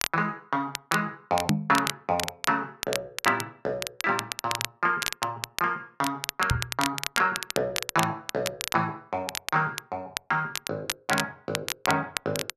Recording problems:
crackle; vinyl, SNR 5 dB
microphone thump; at 1.5 s and at 6.5 s; peak +8 dB vs average level

